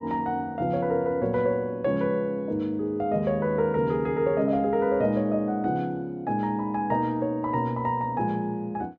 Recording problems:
none

